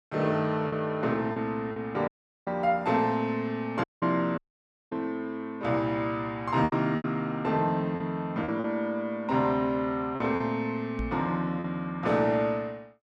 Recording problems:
lost packets; 5% of the sound replaced, filled with repeated pitch periods
dropout; at 2 s, at 4 s and at 4.5 s for 0.5 s
microphone bump; at 11 s; peak -1 dB vs average level

